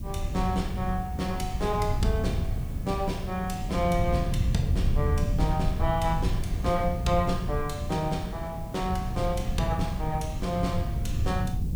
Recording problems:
background hiss; slope +5 dB per octave, SNR 22 dB
rumble; below 120 Hz, SNR 1 dB
wind noise; below 270 Hz, SNR 16 dB

